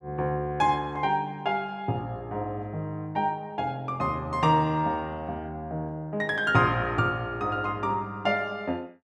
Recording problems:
none

